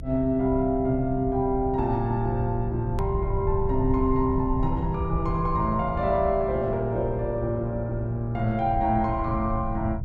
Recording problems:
hum; 60 Hz, harmonics up to 540 Hz, SNR 18 dB
rumble; below 110 Hz, SNR 8 dB
click at an edit; at 3 s

